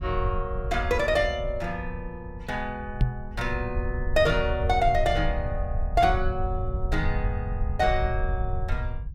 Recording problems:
low-frequency rumble; below 82 Hz, SNR 4 dB
microphone bump; at 3 s; peak +7 dB vs average level

